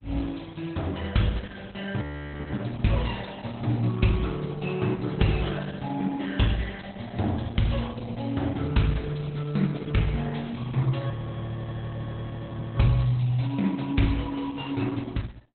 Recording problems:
lossy codec; Opus, log-spectral distance 6 dB, nothing above 4 kHz
audio freezing; at 2 s for 0.5 s and at 11 s for 1.5 s

